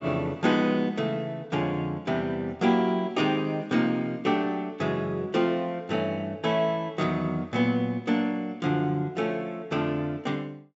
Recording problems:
treble cut off; nothing above 7.6 kHz

